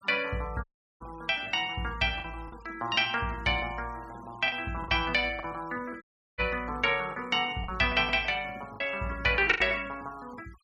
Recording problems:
noise reduction artefacts; signal-to-artefact ratio 25 dB
packet loss; 4% of the sound replaced, filled with the last packet
audio cutting out; at 0.5 s and at 6 s

